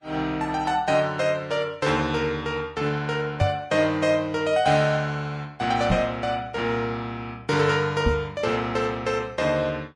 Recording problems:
lossy compression; Vorbis, log-spectral distance 2 dB, nothing above 10.1 kHz
microphone thump; at 3.5 s, at 6 s and at 8 s; peak +5 dB vs average level

